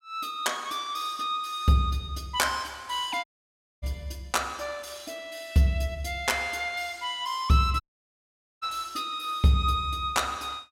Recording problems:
audio cutting out; at 3 s for 0.5 s and at 8 s for 1 s

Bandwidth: 16 kHz